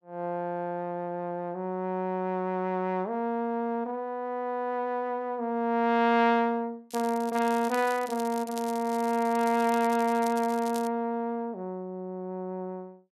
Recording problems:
crackling; from 7 to 11 s; loose cable, SNR 16 dB

